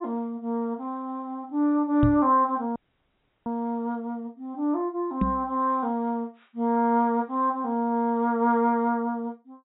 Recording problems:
low-pass filter; nothing above 3.9 kHz
microphone bump; at 2 s and at 5 s; peak +5 dB vs average level
dropout; at 3 s for 0.5 s

